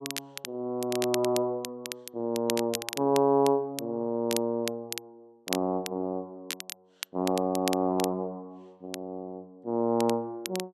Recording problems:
crackle; vinyl, SNR 9 dB

